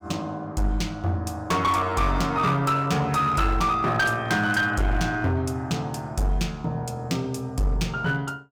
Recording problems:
distorted audio; hard clipping, uneven, signal-to-distortion ratio 11 dB

